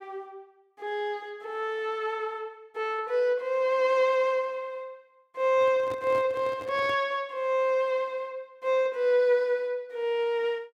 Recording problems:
handling noise; from 5.5 to 7 s; peak -10 dB vs average level

